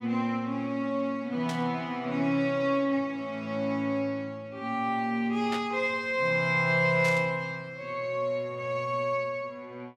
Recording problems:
static burst; at 1.5 s, at 5.5 s and at 7 s; peak -4 dB vs average level

